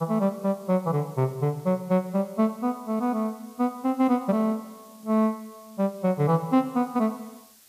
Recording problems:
hiss; slope +1 dB per octave, SNR 27 dB

